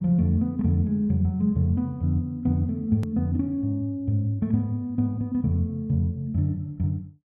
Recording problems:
hard cut with a click; at 3 s

